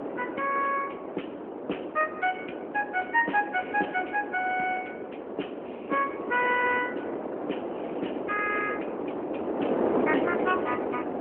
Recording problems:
phone line; 240 Hz to 3.1 kHz, AMR-NB
wind on the microphone; below 670 Hz, SNR 3 dB

